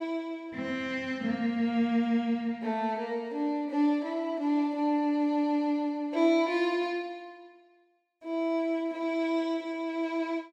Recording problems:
none

